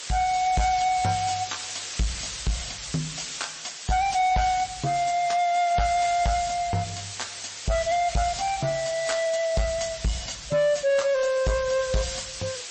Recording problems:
lossy codec; MP3, then MP3, log-spectral distance 14 dB, nothing above 8 kHz
distorted audio; soft clipping, signal-to-distortion ratio 10 dB
hiss; slope +2 dB per octave, SNR 9 dB

